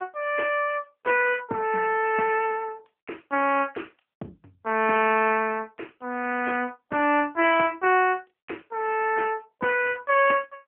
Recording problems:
phone line; 240 Hz to 3.1 kHz, AMR-NB

